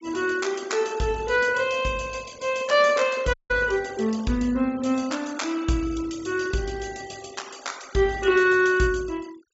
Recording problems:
treble missing; nothing above 8 kHz
noise reduction artefacts; signal-to-artefact ratio 22 dB
dropout; at 3.5 s

